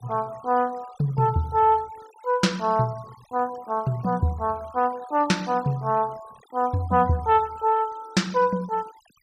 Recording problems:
denoising artefacts; signal-to-artefact ratio 25 dB

